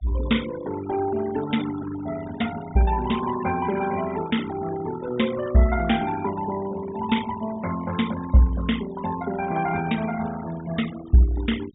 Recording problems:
treble cut off; nothing above 4 kHz
denoising artefacts; signal-to-artefact ratio 15 dB

